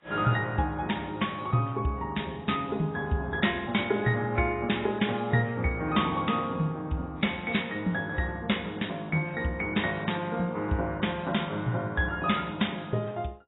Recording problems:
lossy codec; AAC, log-spectral distance 4 dB, nothing above 3.8 kHz

